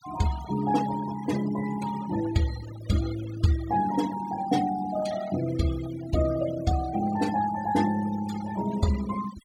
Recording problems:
noise reduction artefacts; signal-to-artefact ratio 13 dB

